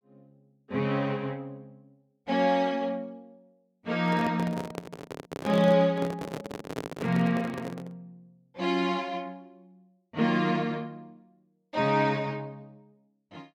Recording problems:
microphone handling noise; from 4 to 8 s; peak -2 dB vs average level

